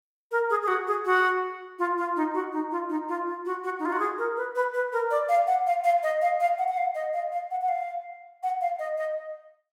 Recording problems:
none

